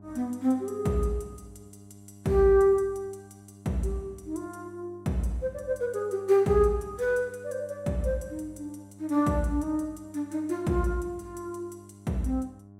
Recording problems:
hum; 50 Hz, harmonics up to 1 kHz, SNR 22 dB

